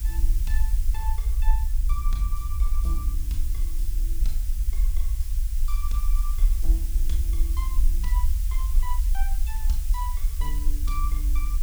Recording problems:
hiss; SNR 2 dB
low-frequency rumble; below 48 Hz, SNR -13 dB
wind on the microphone; below 64 Hz, SNR 4 dB

